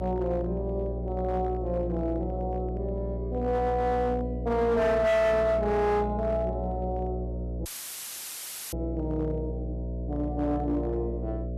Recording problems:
distortion; hard clipping, signal-to-distortion ratio 11 dB
hum; 60 Hz, harmonics up to 660 Hz, SNR 6 dB
dropout; at 7.5 s for 1 s; filled with static

